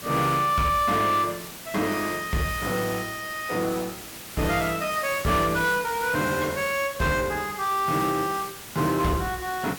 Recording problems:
distorted audio; soft clipping, signal-to-distortion ratio 12 dB
background hiss; slope -1 dB per octave, SNR 12 dB

